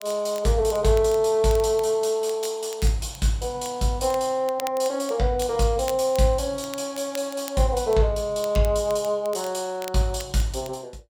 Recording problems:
crackling; vinyl, SNR 20 dB

